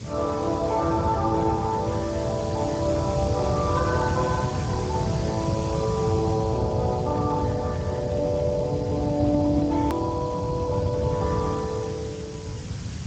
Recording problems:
lossy codec; Speex, log-spectral distance 4 dB, nothing above 16.6 kHz
electrical hum; 60 Hz, harmonics up to 540 Hz, SNR 24 dB
hiss; slope 0 dB per octave, SNR 16 dB
low-frequency rumble; below 170 Hz, SNR 4 dB
hard cut with a click; at 10 s

